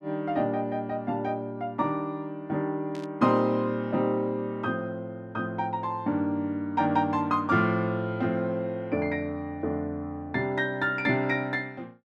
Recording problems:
static burst; at 3 s; peak -14 dB vs average level

